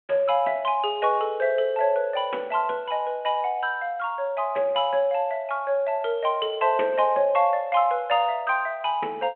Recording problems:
phone line; 300 Hz to 3.3 kHz, G.726

